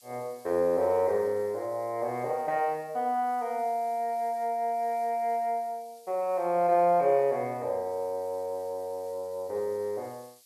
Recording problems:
background hiss; SNR 27 dB

